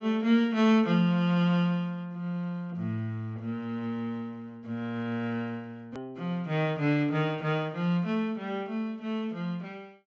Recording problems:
low-pass filter; nothing above 7.7 kHz
click at an edit; at 6 s

